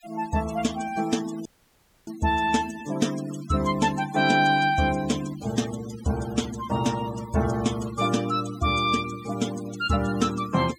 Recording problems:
noise reduction artefacts; signal-to-artefact ratio 15 dB
audio cutting out; at 1.5 s for 0.5 s

